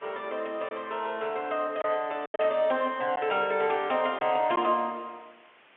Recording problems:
telephone audio; 190 Hz to 3.3 kHz, G.711
background hiss; SNR 28 dB
packet loss; 4% of the sound replaced, filled with silence

